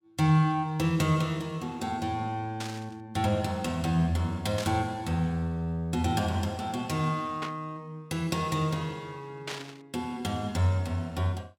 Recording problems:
static burst; 4 times, first at 2.5 s; peak -3 dB vs average level

